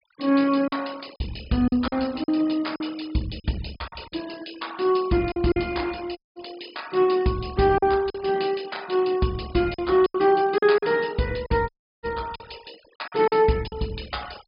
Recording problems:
low-pass filter; nothing above 5.1 kHz
noise reduction artefacts; signal-to-artefact ratio 21 dB
lost packets; 7% of the sound replaced, filled with silence
dropout; at 6 s and at 12 s

